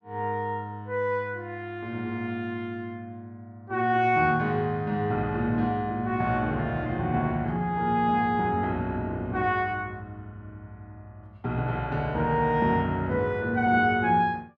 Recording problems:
none

